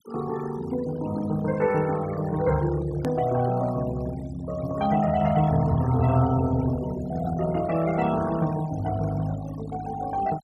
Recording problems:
noise reduction artefacts; signal-to-artefact ratio 16 dB
hard cut with a click; at 3 s

